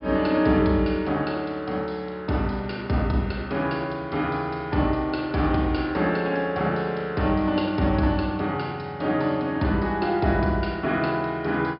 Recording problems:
treble missing; nothing above 5.5 kHz

